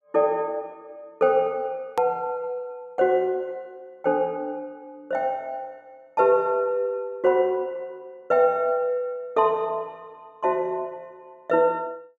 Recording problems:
edit click; at 2 s

